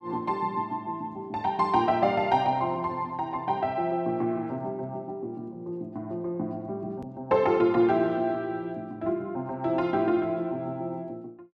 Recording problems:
edit click; at 7 s

